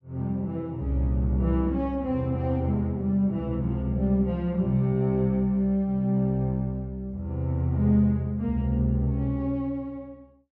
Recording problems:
none

